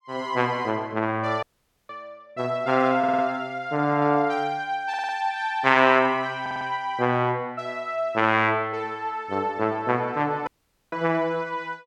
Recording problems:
audio cutting out; at 1.5 s and at 10 s
audio stuttering; at 3 s, at 5 s and at 6.5 s

